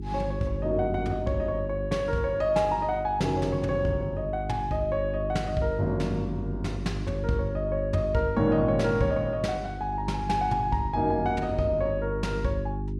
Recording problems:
hum; 50 Hz, harmonics up to 400 Hz, SNR 7 dB

